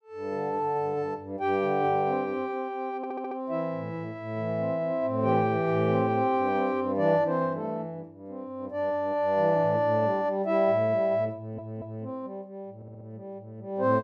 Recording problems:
audio stuttering; at 3 s, at 11 s and at 13 s

